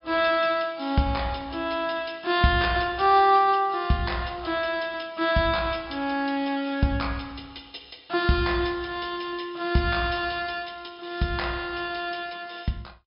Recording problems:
treble cut off; nothing above 5.5 kHz

